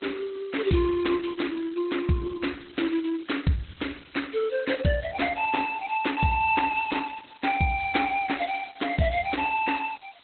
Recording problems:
lossy codec; Opus, log-spectral distance 14 dB, nothing above 4.1 kHz
background hiss; SNR 29 dB

